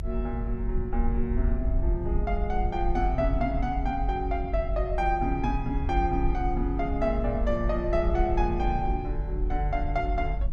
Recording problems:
low-frequency rumble; below 50 Hz, SNR 2 dB
wind on the microphone; below 100 Hz, SNR 9 dB

